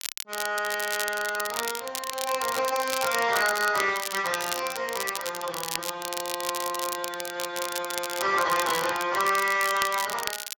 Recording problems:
codec artefacts; Speex, log-spectral distance 5 dB
crackling; vinyl, SNR 6 dB

